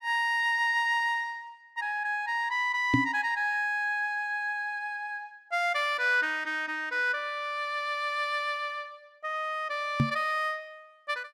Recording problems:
microphone bump; at 3 s and at 10 s; peak +8 dB vs average level

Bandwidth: 14.5 kHz